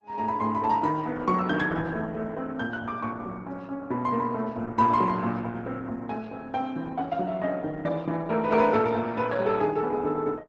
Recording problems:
lossy codec; Opus, log-spectral distance 3 dB, nothing above 8 kHz

